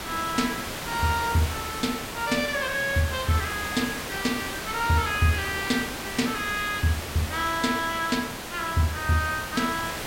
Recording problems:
background hiss; slope -3 dB per octave, SNR 6 dB

